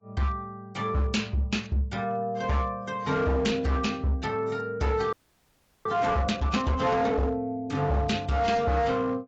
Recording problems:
codec artefacts; AAC, log-spectral distance 2 dB, nothing above 7.3 kHz
distortion; hard clipping, signal-to-distortion ratio 11 dB
audio freezing; at 5 s for 0.5 s

